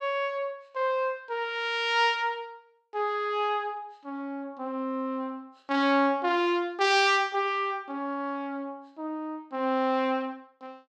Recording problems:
none

